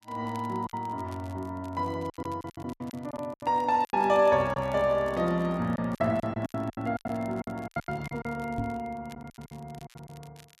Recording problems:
crackle; vinyl, SNR 27 dB
lost packets; 14% of the sound replaced, filled with silence
microphone thump; at 8.5 s; peak -1 dB vs average level

